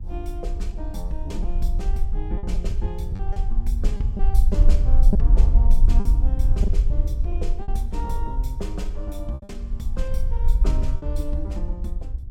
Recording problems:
electrical hum; 60 Hz, harmonics up to 780 Hz, SNR 24 dB
rumble; below 50 Hz, strongest tone 20 Hz, SNR -11 dB
lost packets; 5% of the sound replaced, filled with repeated pitch periods

